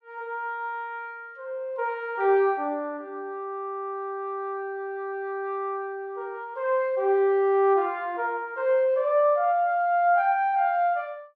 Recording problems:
none

